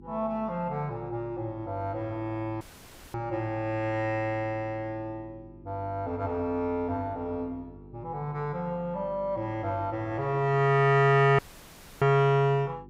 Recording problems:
electrical hum; 50 Hz, harmonics up to 400 Hz, SNR 21 dB
dropout; at 2.5 s for 0.5 s and at 11 s for 0.5 s

